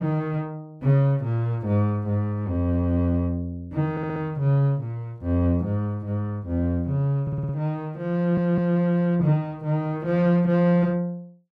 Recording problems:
stutter; at 4 s, at 7 s and at 8 s

